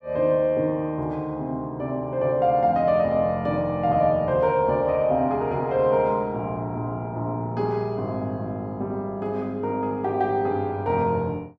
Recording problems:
none

